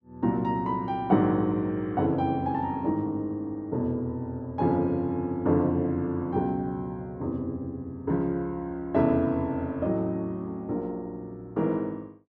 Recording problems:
none

